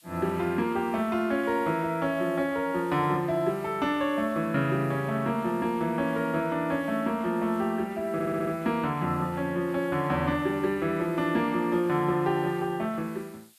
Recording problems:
hiss; SNR 27 dB
stutter; at 8 s

